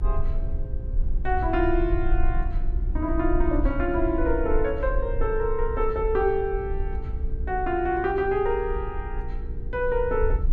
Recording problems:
hum; 60 Hz, harmonics up to 360 Hz, SNR 14 dB
low-frequency rumble; below 52 Hz, strongest tone 20 Hz, SNR 5 dB

